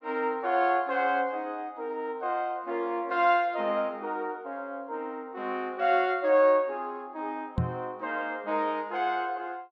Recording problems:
knock on the microphone; at 7.5 s; peak +4 dB vs average level

